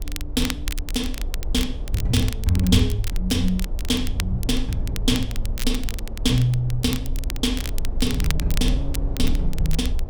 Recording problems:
low-frequency rumble; below 48 Hz, strongest tone 18 Hz, SNR 6 dB
wind on the microphone; below 460 Hz, SNR 15 dB
crackle; vinyl, SNR 11 dB

